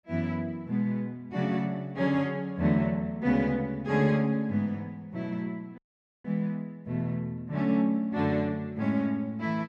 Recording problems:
dropout; at 6 s

